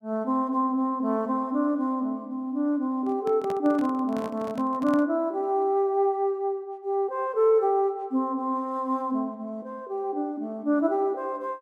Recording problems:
handling noise; from 3 to 5 s; peak -7 dB vs average level

